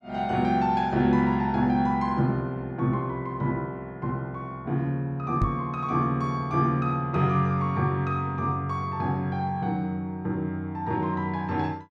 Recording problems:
microphone thump; at 5.5 s; peak +4 dB vs average level

